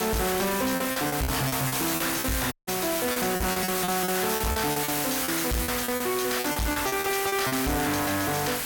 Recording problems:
distorted audio; hard clipping, signal-to-distortion ratio 7 dB
hiss; slope -1 dB per octave, SNR 1 dB
wind on the microphone; below 2.6 kHz, SNR 21 dB
packet loss; 13% of the sound replaced, filled with repeated pitch periods
dropout; at 2.5 s

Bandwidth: 17 kHz